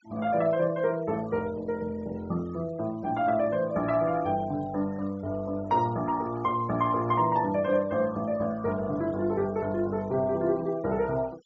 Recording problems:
low-pass filter; nothing above 8 kHz
noise reduction artefacts; signal-to-artefact ratio 24 dB

